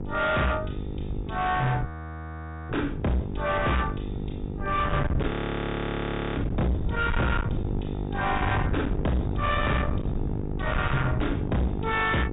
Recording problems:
low-pass filter; nothing above 4 kHz
distortion; hard clipping, uneven, signal-to-distortion ratio 6 dB
hum; 50 Hz, harmonics up to 1 kHz, SNR 8 dB
wind on the microphone; below 230 Hz, SNR 4 dB
audio freezing; at 2 s for 1 s and at 5.5 s for 1 s

